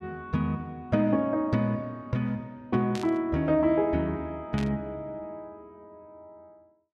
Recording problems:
static burst; at 3 s and at 4.5 s; peak -7 dB vs average level

